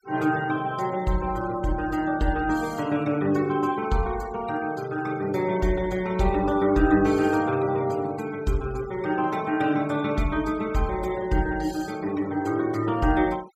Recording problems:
denoising artefacts; signal-to-artefact ratio 20 dB

